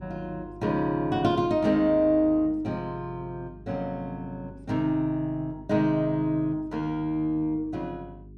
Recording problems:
hum; 50 Hz, harmonics up to 400 Hz, SNR 21 dB

